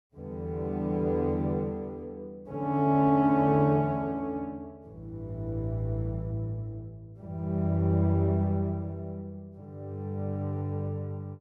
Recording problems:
none

